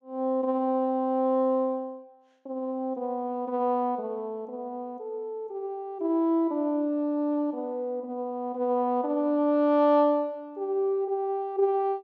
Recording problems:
none

